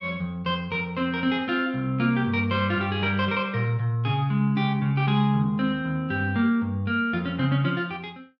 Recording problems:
none

